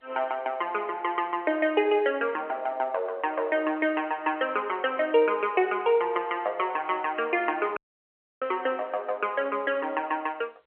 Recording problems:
phone line; 340 Hz to 3.3 kHz, G.711
audio cutting out; at 8 s for 0.5 s

